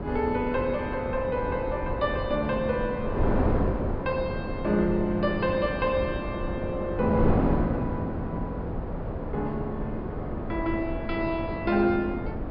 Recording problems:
treble missing; nothing above 5.5 kHz
wind on the microphone; below 440 Hz, SNR 2 dB

